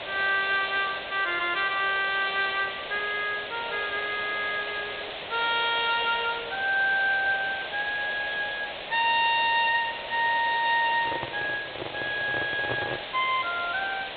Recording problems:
treble missing; nothing above 4 kHz
hiss; SNR 9 dB
microphone handling noise; from 11 to 13 s; peak -2 dB vs average level

